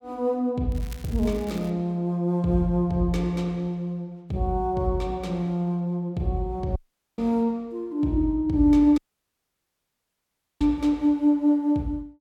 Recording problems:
crackling; at 0.5 s; loose cable, SNR 22 dB
dropout; at 7 s and at 9 s for 1.5 s

